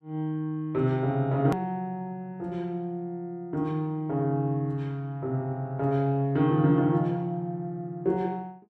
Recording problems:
edit click; at 1.5 s

